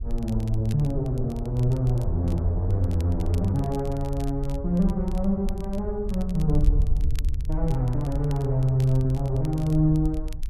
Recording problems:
wind noise; below 60 Hz, SNR 6 dB
crackle; vinyl, SNR 25 dB

